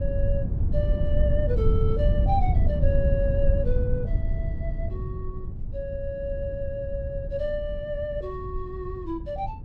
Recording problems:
wind noise; below 92 Hz, SNR -4 dB

